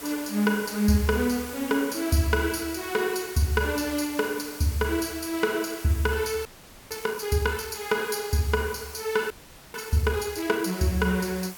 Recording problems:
hiss; slope -2 dB per octave, SNR 13 dB
frozen audio; at 6.5 s and at 9.5 s

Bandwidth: 18 kHz